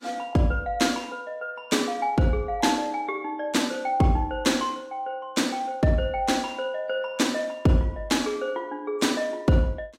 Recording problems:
codec artefacts; AAC, log-spectral distance 2 dB, nothing above 15.5 kHz

